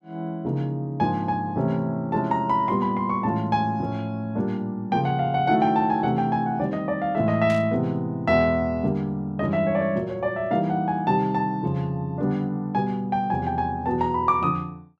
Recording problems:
burst of static; at 7.5 s; peak -10 dB vs average level

